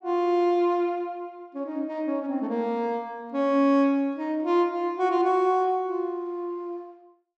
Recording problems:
low-pass filter; nothing above 8 kHz

